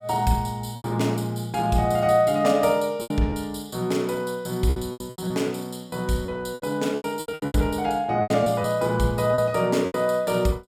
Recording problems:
packet loss; 10% of the sound replaced, filled with repeated pitch periods

